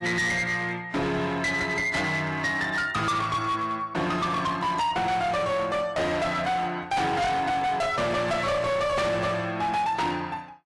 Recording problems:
codec artefacts; AAC, log-spectral distance 2 dB, nothing above 11.3 kHz
distortion; hard clipping, signal-to-distortion ratio 7 dB

